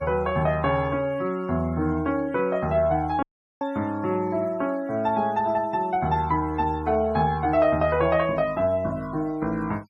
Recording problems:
noise reduction artefacts; signal-to-artefact ratio 26 dB
audio cutting out; at 3 s

